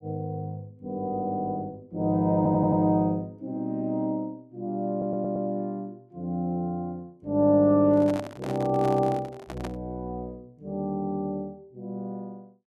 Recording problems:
audio stuttering; at 2.5 s and at 5 s
microphone handling noise; from 8 to 10 s; peak -5 dB vs average level

